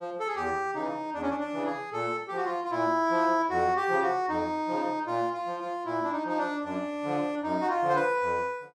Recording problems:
none

